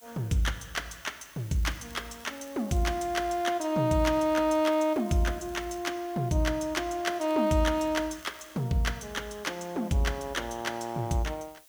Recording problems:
background hiss; slope +2 dB per octave, SNR 24 dB
crackle; from 1.5 to 3.5 s, from 4 to 6 s and from 7 to 8.5 s; loose cable, SNR 26 dB

